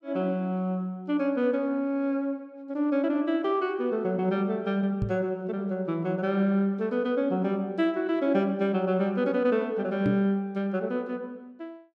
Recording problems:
knock on the microphone; at 5 s and at 10 s; peak +2 dB vs average level

